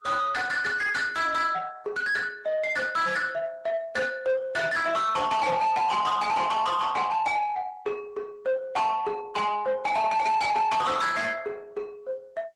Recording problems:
lossy codec; Vorbis, then Opus, log-spectral distance 3 dB
distortion; soft clipping, signal-to-distortion ratio 6 dB

